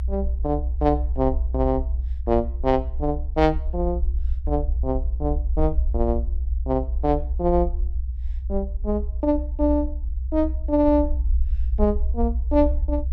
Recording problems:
rumble; below 62 Hz, strongest tone 62 Hz, SNR 3 dB

